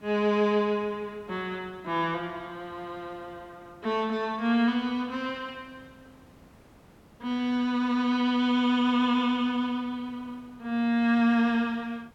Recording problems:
hiss; slope -6 dB per octave, SNR 28 dB

